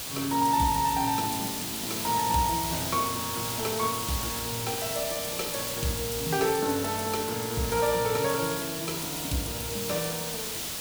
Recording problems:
hiss; SNR 2 dB

